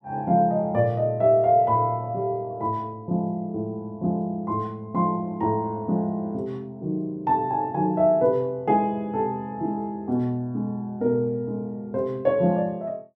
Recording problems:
none

